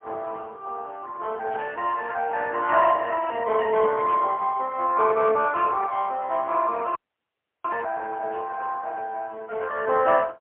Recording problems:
telephone audio; 280 Hz to 3.5 kHz, AMR-NB, then MP3
static burst; 4 times, first at 1.5 s; peak -13 dB vs average level
audio freezing; at 7 s for 0.5 s

